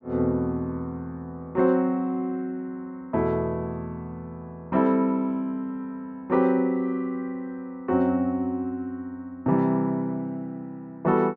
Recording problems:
low-pass filter; nothing above 8 kHz

